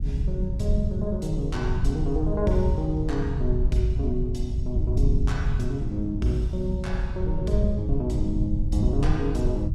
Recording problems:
rumble; below 98 Hz, SNR -1 dB

